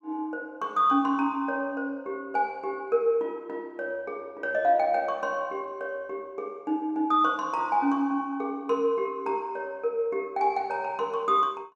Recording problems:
none

